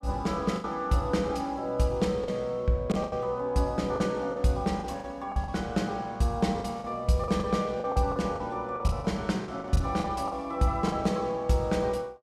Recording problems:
packet loss; 10% of the sound replaced, filled with the last packet

